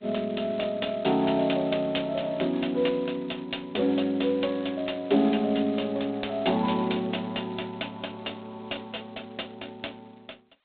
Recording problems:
telephone audio; 190 Hz to 3.8 kHz, G.726

